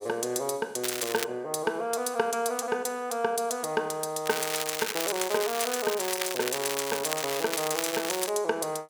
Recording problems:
crackle; at 1 s and from 4.5 to 8.5 s; loose cable, SNR 3 dB

